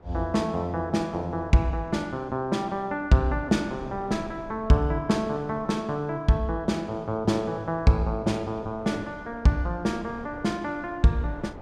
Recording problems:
wind on the microphone; below 590 Hz, SNR 20 dB

